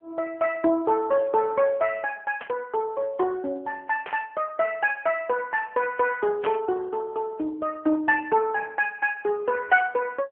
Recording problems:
phone line; 190 Hz to 2.9 kHz, AMR-NB
burst of static; at 2.5 s, at 4 s and at 6.5 s; peak -4 dB vs average level

